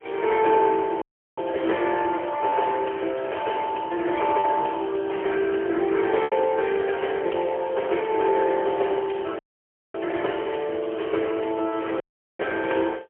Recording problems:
phone line; 320 Hz to 3.2 kHz, AMR-NB, then MP3
lost packets; 1.2% of the sound replaced, filled with repeated pitch periods
dropout; at 1 s, at 9.5 s for 0.5 s and at 12 s

